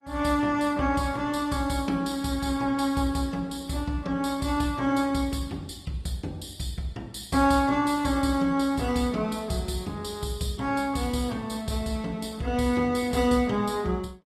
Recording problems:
lossy compression; Opus, log-spectral distance 3 dB, nothing above 14.3 kHz

